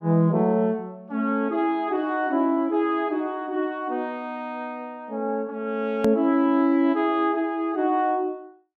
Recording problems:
click at an edit; at 6 s

